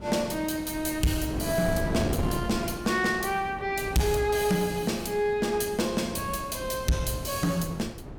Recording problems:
distorted audio; soft clipping, signal-to-distortion ratio 10 dB
wind noise; below 380 Hz, SNR 9 dB

